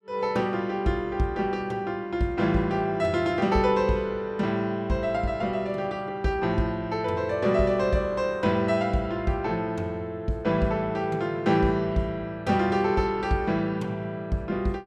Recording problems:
none

